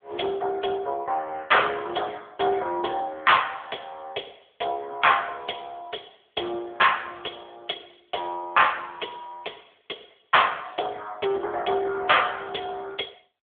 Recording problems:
telephone audio; 340 Hz to 3.6 kHz, AMR-NB

